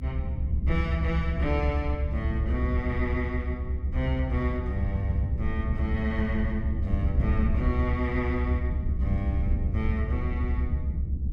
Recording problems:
rumble; below 78 Hz, SNR -3 dB

